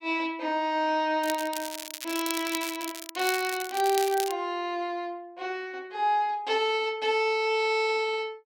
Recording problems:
crackle; from 1 to 4.5 s; loose cable, SNR 8 dB

